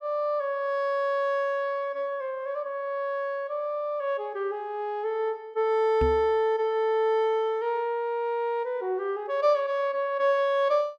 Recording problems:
knock on the microphone; at 6 s; peak 0 dB vs average level

